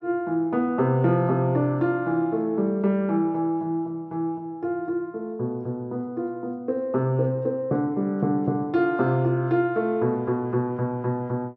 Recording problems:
none

